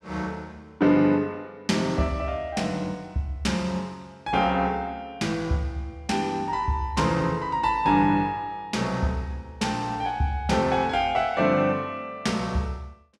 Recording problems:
none

